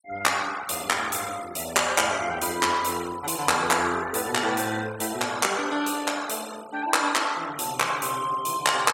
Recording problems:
denoising artefacts; signal-to-artefact ratio 16 dB

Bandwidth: 17.5 kHz